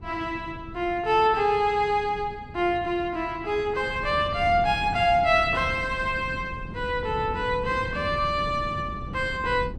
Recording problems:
wind on the microphone; below 220 Hz, SNR 13 dB

